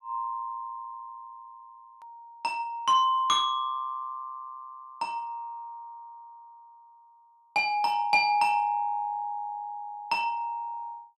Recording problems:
edit click; at 2 s

